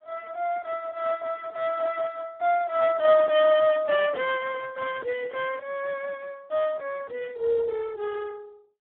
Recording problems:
telephone audio; 280 Hz to 3.3 kHz, Speex

